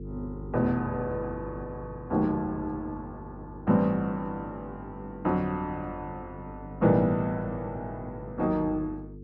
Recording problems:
hum; 50 Hz, harmonics up to 450 Hz, SNR 13 dB

